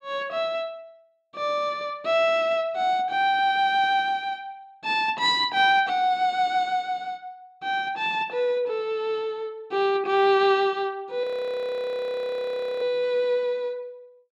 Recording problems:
audio freezing; at 11 s for 1.5 s

